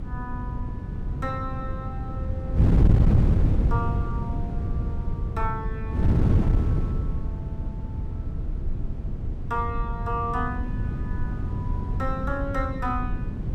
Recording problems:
low-frequency rumble; below 62 Hz, SNR 4 dB
wind noise; below 160 Hz, SNR -6 dB

